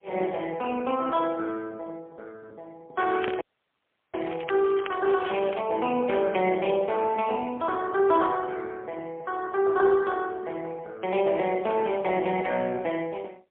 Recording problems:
phone line; 260 Hz to 3.3 kHz, AMR-NB, then MP3
crackle; from 3 to 5.5 s; loose cable, SNR 15 dB
audio cutting out; at 3.5 s for 0.5 s

